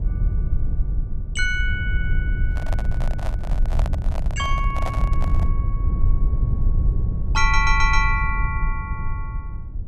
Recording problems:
rumble; below 74 Hz, SNR 0 dB
handling noise; from 2.5 to 5.5 s; peak -2 dB vs average level
stutter; at 7.5 s

